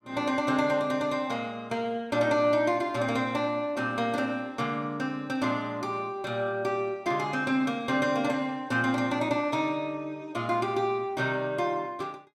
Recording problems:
none

